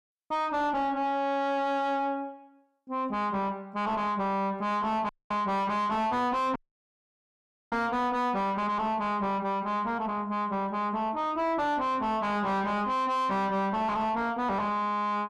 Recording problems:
distorted audio; soft clipping, signal-to-distortion ratio 6 dB
dropout; at 5 s and at 6.5 s for 1 s

